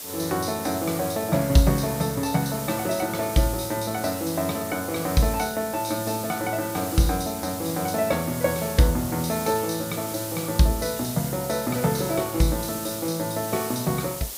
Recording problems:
background hiss; SNR 8 dB

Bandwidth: 15.5 kHz